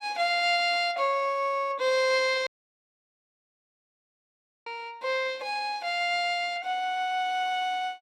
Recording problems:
audio cutting out; at 2.5 s for 2 s

